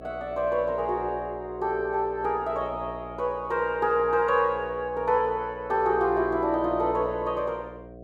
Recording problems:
electrical hum; 60 Hz, harmonics up to 720 Hz, SNR 15 dB

